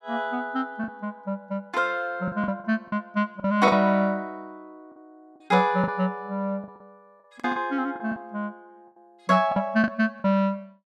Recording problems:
packet loss; 7% of the sound replaced, filled with the last packet

